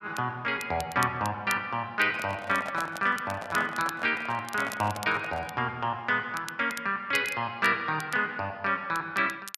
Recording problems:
crackle; vinyl, SNR 16 dB
handling noise; from 2 to 5.5 s; peak -5 dB vs average level

